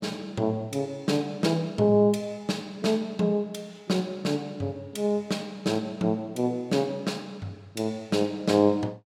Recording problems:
none

